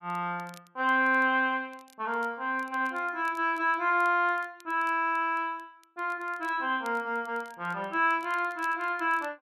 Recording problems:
crackle; vinyl, SNR 30 dB

